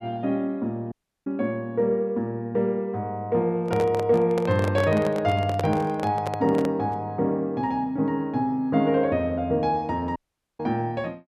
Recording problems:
audio cutting out; at 1 s and at 10 s
handling noise; from 3.5 to 7 s; peak -1 dB vs average level

